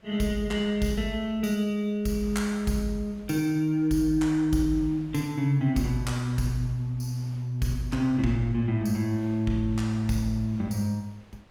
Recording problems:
wind on the microphone; below 1.7 kHz, SNR 27 dB

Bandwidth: 18.5 kHz